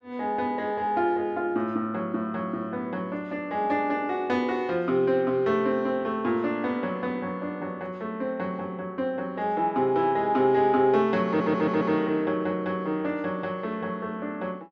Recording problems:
stutter; at 11 s

